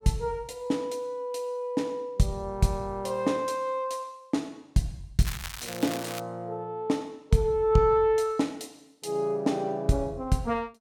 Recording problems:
crackling; from 5 to 6 s; loose cable, SNR 10 dB

